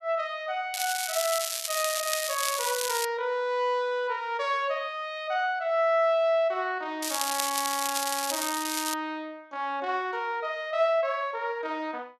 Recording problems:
crackle; from 0.5 to 3 s and from 7 to 9 s; loose cable, SNR 2 dB

